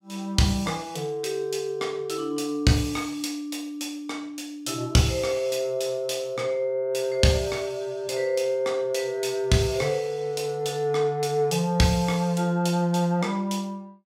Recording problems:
none

